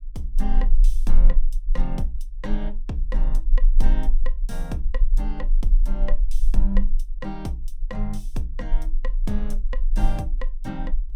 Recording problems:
rumble; below 32 Hz, strongest tone 18 Hz, SNR -7 dB

